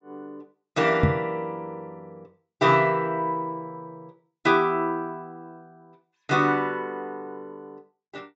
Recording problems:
low-pass filter; nothing above 8 kHz
microphone bump; at 1 s; peak +8 dB vs average level

